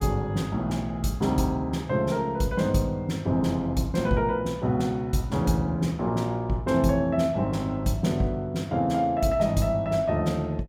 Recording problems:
none

